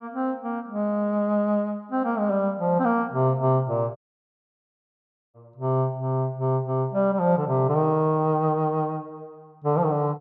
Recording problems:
audio cutting out; at 4 s for 1.5 s

